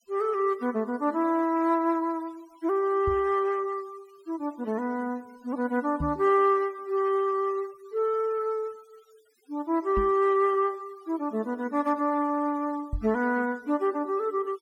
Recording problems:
denoising artefacts; signal-to-artefact ratio 26 dB
microphone bump; 4 times, first at 3 s; peak -2 dB vs average level

